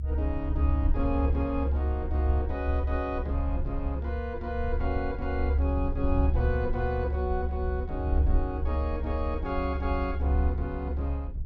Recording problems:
low-frequency rumble; below 72 Hz, strongest tone 70 Hz, SNR -3 dB

